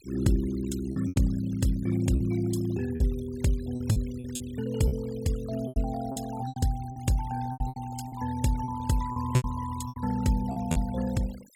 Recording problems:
denoising artefacts; signal-to-artefact ratio 19 dB
packet loss; 10% of the sound replaced, filled with repeated pitch periods

